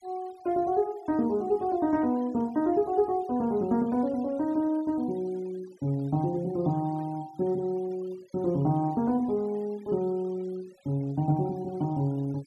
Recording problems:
noise reduction artefacts; signal-to-artefact ratio 25 dB

